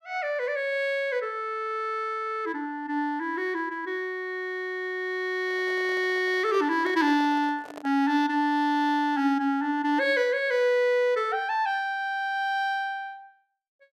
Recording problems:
handling noise; from 5.5 to 8 s; peak -11 dB vs average level

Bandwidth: 15 kHz